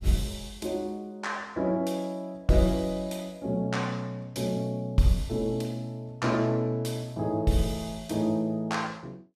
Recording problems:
none

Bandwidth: 14.5 kHz